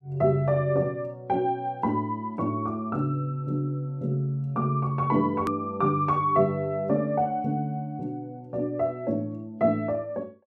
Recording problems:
hard cut with a click; at 5.5 s

